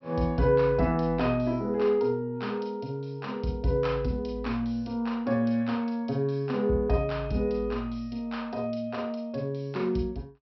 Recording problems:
low-pass filter; nothing above 5.6 kHz

